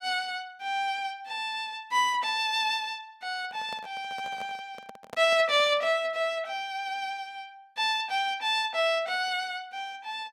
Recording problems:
handling noise; from 3.5 to 6 s; peak -8 dB vs average level

